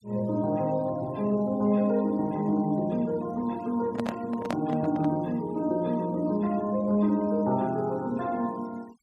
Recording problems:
denoising artefacts; signal-to-artefact ratio 26 dB
microphone handling noise; from 4 to 5 s; peak 0 dB vs average level

